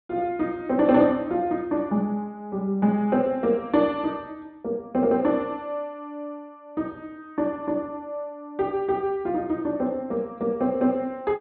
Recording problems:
low-pass filter; nothing above 4.4 kHz

